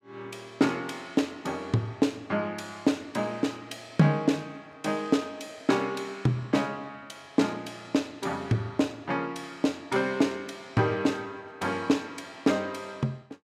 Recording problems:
none

